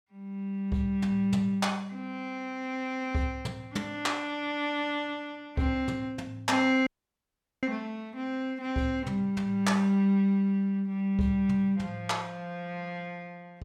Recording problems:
dropout; at 7 s for 1 s

